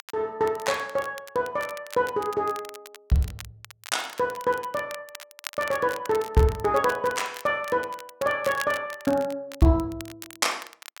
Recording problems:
crackle; vinyl, SNR 16 dB

